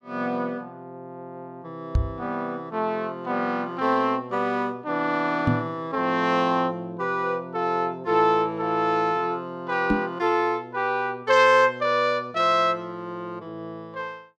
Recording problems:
microphone bump; at 2 s, at 5.5 s and at 10 s; peak +5 dB vs average level

